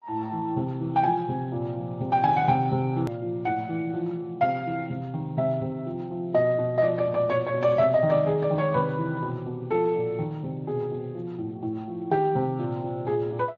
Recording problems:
lossy compression; Speex, then MP3, log-spectral distance 2 dB, nothing above 13.1 kHz
click at an edit; at 3 s

